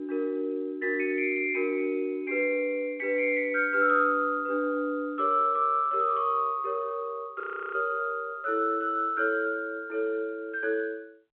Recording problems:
telephone audio; 170 Hz to 3.8 kHz, G.711
frozen audio; at 7.5 s

